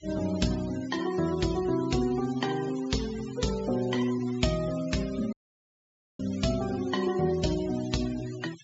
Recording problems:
treble cut off; nothing above 8 kHz
denoising artefacts; signal-to-artefact ratio 15 dB
audio cutting out; at 5.5 s for 1 s

